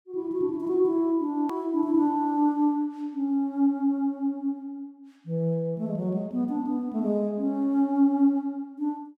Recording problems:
click at an edit; at 1.5 s

